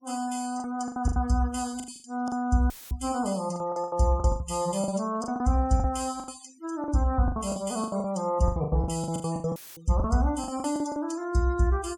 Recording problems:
noise reduction artefacts; signal-to-artefact ratio 22 dB
lost packets; 16% of the sound replaced, filled with the last packet
dropout; at 2.5 s and at 9.5 s; filled with static

